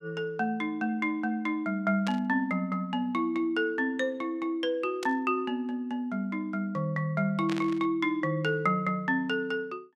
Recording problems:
static burst; at 2 s, at 5 s and at 7.5 s; peak -4 dB vs average level

